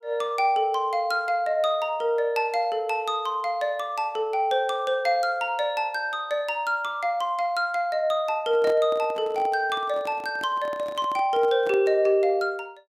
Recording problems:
handling noise; from 8.5 to 12 s; peak -8 dB vs average level

